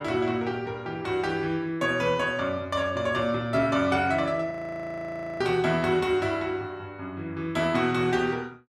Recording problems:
frozen audio; at 4.5 s for 1 s

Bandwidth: 14 kHz